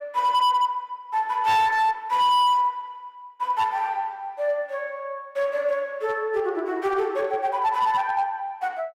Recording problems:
distorted audio; hard clipping, signal-to-distortion ratio 11 dB

